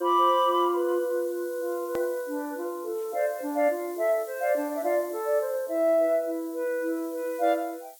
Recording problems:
background hiss; slope +7 dB per octave, SNR 20 dB
edit click; at 2 s

